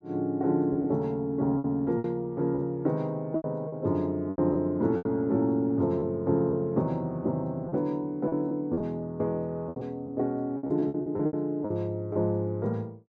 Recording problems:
packet loss; 9% of the sound replaced, filled with repeated pitch periods

